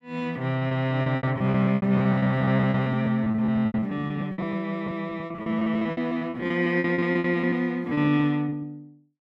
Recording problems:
packet loss; 21% of the sound replaced, filled with repeated pitch periods

